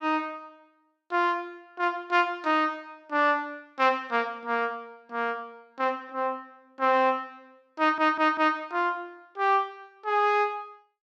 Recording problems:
audio stuttering; at 8 s

